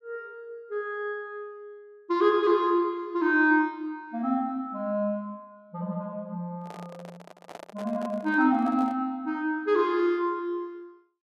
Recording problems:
handling noise; from 6.5 to 9 s; peak -11 dB vs average level

